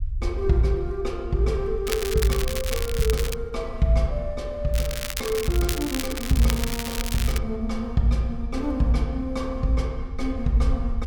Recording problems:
rumble; below 62 Hz, SNR 9 dB
crackling; from 2 to 3.5 s and from 4.5 to 7.5 s; loose cable, SNR 6 dB

